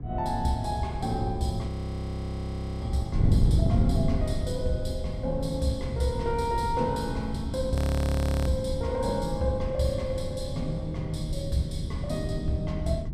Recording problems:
wind noise; below 150 Hz, SNR 2 dB
frozen audio; at 1.5 s for 1 s and at 8 s for 0.5 s

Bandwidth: 14.5 kHz